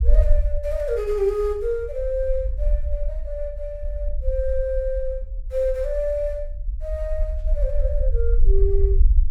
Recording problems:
low-frequency rumble; below 50 Hz, SNR 0 dB

